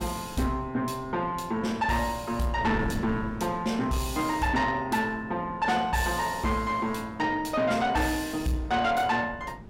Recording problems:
distortion; soft clipping, signal-to-distortion ratio 11 dB
wind noise; below 320 Hz, SNR 14 dB

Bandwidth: 16.5 kHz